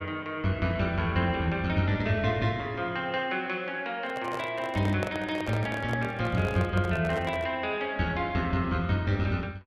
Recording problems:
handling noise; from 4 to 7.5 s; peak -2 dB vs average level

